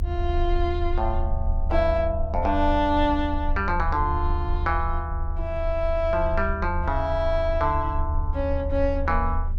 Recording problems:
low-frequency rumble; below 76 Hz, strongest tone 28 Hz, SNR 3 dB

